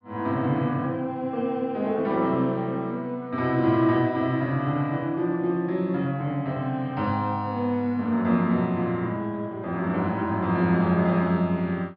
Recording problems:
treble missing; nothing above 5.5 kHz

